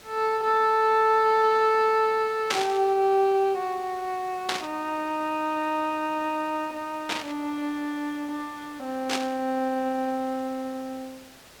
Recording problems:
hiss; slope -2 dB per octave, SNR 23 dB
burst of static; 4 times, first at 2.5 s; peak +4 dB vs average level

